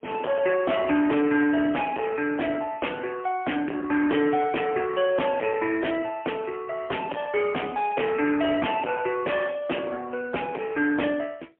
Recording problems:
telephone audio; 260 Hz to 3.3 kHz, AMR-NB, then MP3
distortion; soft clipping, signal-to-distortion ratio 6 dB

